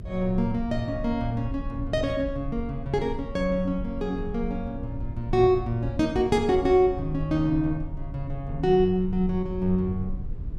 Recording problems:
rumble; below 82 Hz, strongest tone 24 Hz, SNR 11 dB

